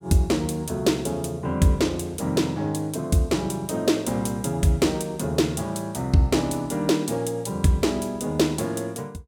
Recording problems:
none

